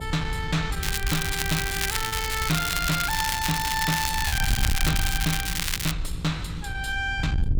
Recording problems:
distorted audio; soft clipping, signal-to-distortion ratio 11 dB
mains hum; 60 Hz, harmonics up to 960 Hz, SNR 19 dB
wind on the microphone; below 88 Hz, SNR 5 dB
packet loss; 1.1% of the sound replaced, filled with repeated pitch periods
crackle; from 1 to 6 s; loose cable, SNR 1 dB

